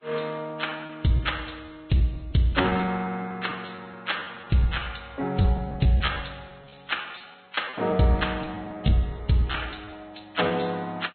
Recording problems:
lossy compression; MP2, then Vorbis, log-spectral distance 6 dB, nothing above 4.2 kHz
packet loss; 12% of the sound replaced, filled with repeated pitch periods

